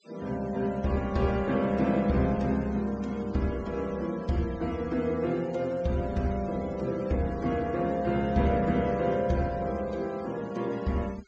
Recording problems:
treble cut off; nothing above 8 kHz
noise reduction artefacts; signal-to-artefact ratio 23 dB

